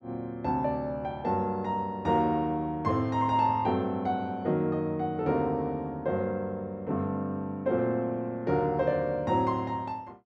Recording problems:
none

